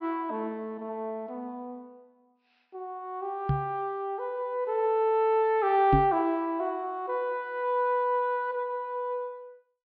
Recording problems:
treble missing; nothing above 5.5 kHz
microphone bump; at 3.5 s and at 6 s; peak +7 dB vs average level

